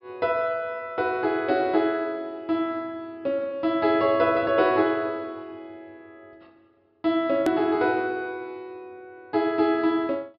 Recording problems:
low-pass filter; nothing above 5.5 kHz
hard cut with a click; at 7.5 s

